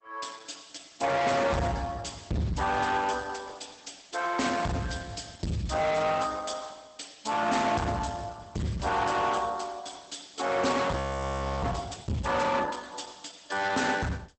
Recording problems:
lossy codec; Opus, log-spectral distance 8 dB, nothing above 8.2 kHz
distortion; hard clipping, signal-to-distortion ratio 6 dB
audio freezing; at 11 s for 0.5 s

